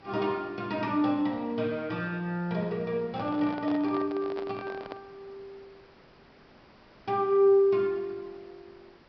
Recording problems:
low-pass filter; nothing above 5.5 kHz
background hiss; slope -5 dB per octave, SNR 27 dB
microphone handling noise; from 3 to 5 s; peak -8 dB vs average level

